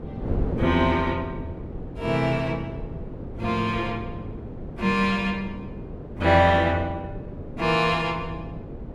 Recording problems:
wind on the microphone; below 360 Hz, SNR 11 dB

